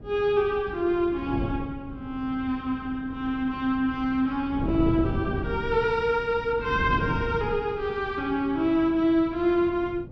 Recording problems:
wind on the microphone; below 280 Hz, SNR 9 dB

